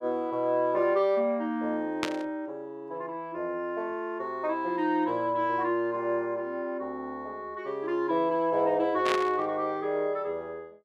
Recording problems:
burst of static; at 2 s and at 9 s; peak +3 dB vs average level

